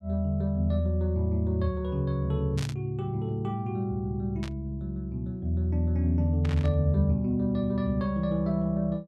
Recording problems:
burst of static; at 2.5 s, at 4.5 s and at 6.5 s; peak -7 dB vs average level

